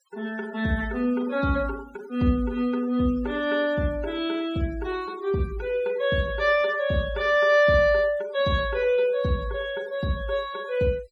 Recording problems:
noise reduction artefacts; signal-to-artefact ratio 22 dB

